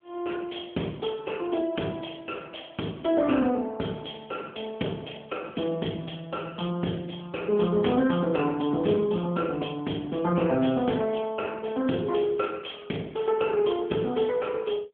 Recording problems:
telephone audio; 150 Hz to 3.3 kHz, AMR-NB

